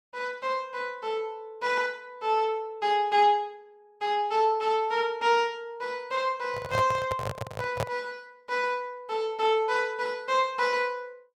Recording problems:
handling noise; from 6.5 to 8 s; peak +2 dB vs average level

